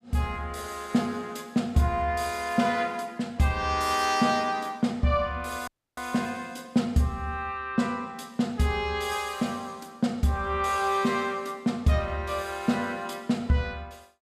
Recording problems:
dropout; at 5.5 s

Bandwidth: 15 kHz